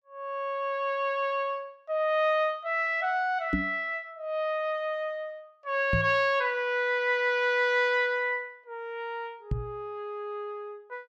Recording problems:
knock on the microphone; at 3.5 s, at 6 s and at 9.5 s; peak +4 dB vs average level

